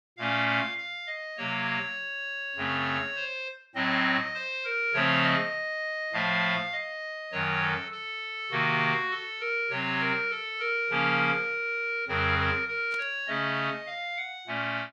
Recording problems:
burst of static; at 13 s; peak -13 dB vs average level

